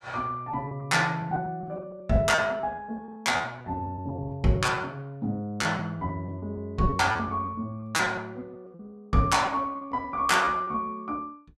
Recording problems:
lost packets; 13% of the sound replaced, filled with repeated pitch periods

